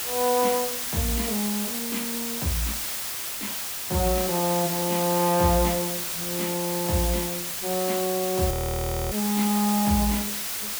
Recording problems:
hiss; slope +1 dB per octave, SNR 1 dB
audio freezing; at 8.5 s for 0.5 s

